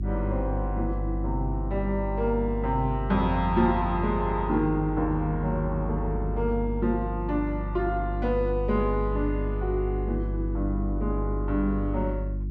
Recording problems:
electrical hum; 50 Hz, harmonics up to 350 Hz, SNR 3 dB

